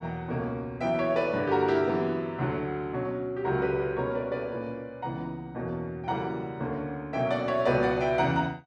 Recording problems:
none

